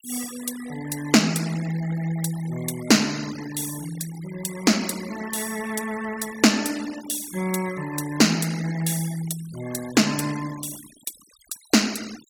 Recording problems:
denoising artefacts; signal-to-artefact ratio 16 dB

